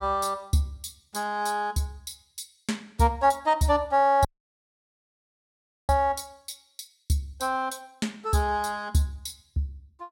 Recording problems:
dropout; at 4.5 s for 1.5 s

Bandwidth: 16 kHz